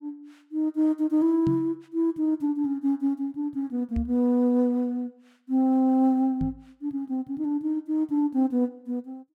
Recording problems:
knock on the microphone; at 1.5 s, at 4 s and at 6.5 s; peak -1 dB vs average level

